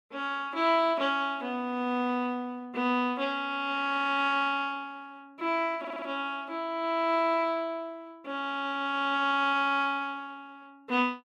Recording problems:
stutter; at 6 s

